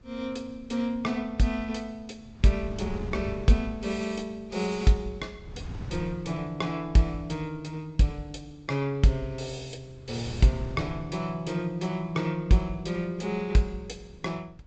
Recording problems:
low-pass filter; nothing above 8 kHz
wind noise; below 160 Hz, SNR 14 dB

